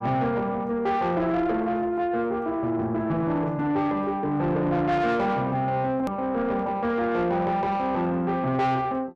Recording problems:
distortion; soft clipping, signal-to-distortion ratio 12 dB
hard cut with a click; at 6 s

